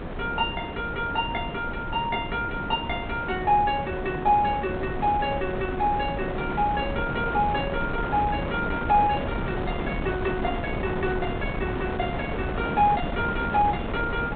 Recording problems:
low-pass filter; nothing above 4 kHz
wind on the microphone; below 670 Hz, SNR 5 dB

